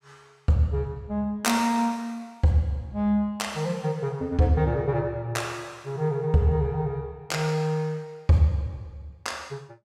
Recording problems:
none

